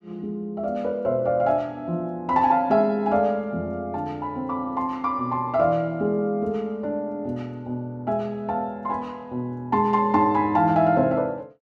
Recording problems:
none

